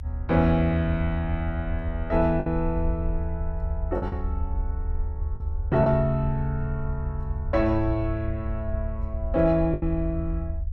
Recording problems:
rumble; below 76 Hz, SNR 5 dB
lost packets; 3% of the sound replaced, filled with the last packet

